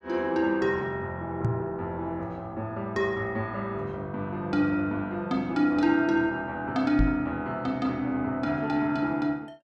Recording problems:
knock on the microphone; at 1.5 s and at 7 s; peak +5 dB vs average level

